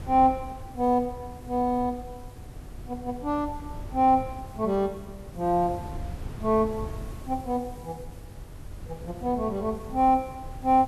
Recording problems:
hiss; slope +1 dB per octave, SNR 30 dB
wind noise; below 140 Hz, SNR 14 dB

